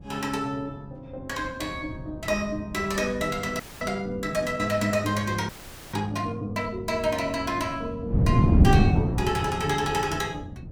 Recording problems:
wind on the microphone; below 210 Hz, SNR -3 dB
audio freezing; at 3.5 s and at 5.5 s

